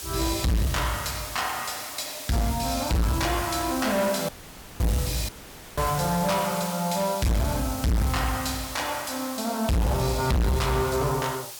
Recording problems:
distortion; hard clipping, uneven, signal-to-distortion ratio 6 dB
hiss; slope +1 dB per octave, SNR 9 dB
dropout; at 4.5 s for 0.5 s and at 5.5 s

